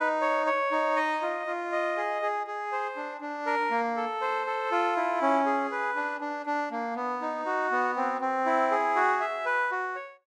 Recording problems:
none

